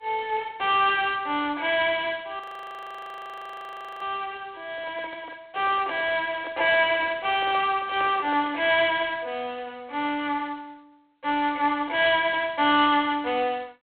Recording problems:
phone line; 260 Hz to 3.5 kHz, G.726
frozen audio; at 2.5 s for 1.5 s
microphone handling noise; from 4.5 to 8.5 s; peak -11 dB vs average level

